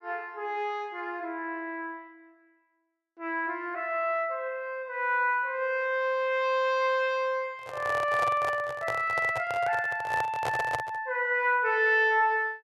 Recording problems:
microphone handling noise; from 7.5 to 11 s; peak 0 dB vs average level

